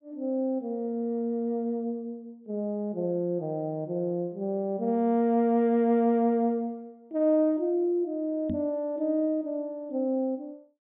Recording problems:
treble cut off; nothing above 3.7 kHz
knock on the microphone; at 8.5 s; peak -1 dB vs average level

